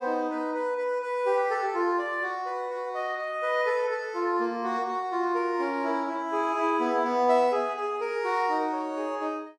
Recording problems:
none

